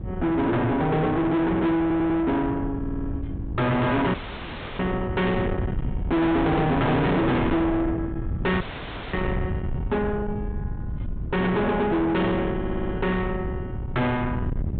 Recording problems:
low-pass filter; nothing above 4 kHz
distortion; soft clipping, signal-to-distortion ratio 6 dB
wind noise; below 320 Hz, SNR 7 dB
audio stuttering; at 2 s, at 3 s and at 13 s
audio cutting out; at 4 s for 0.5 s and at 8.5 s for 0.5 s

